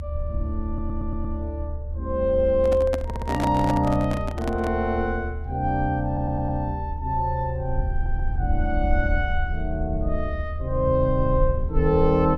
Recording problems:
low-frequency rumble; below 76 Hz, SNR 5 dB
audio stuttering; 4 times, first at 0.5 s
microphone handling noise; from 2.5 to 5 s; peak +2 dB vs average level

